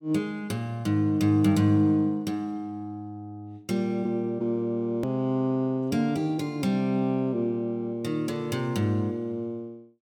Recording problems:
click at an edit; at 5 s

